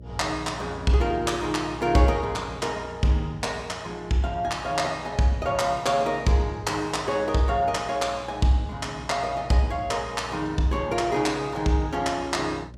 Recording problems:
electrical hum; 60 Hz, harmonics up to 600 Hz, SNR 19 dB

